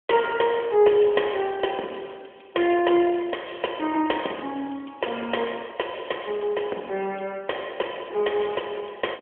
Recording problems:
telephone audio; 280 Hz to 3.3 kHz, AMR-NB

